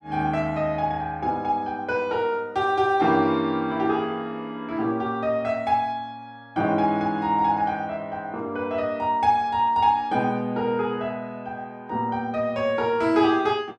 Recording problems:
none

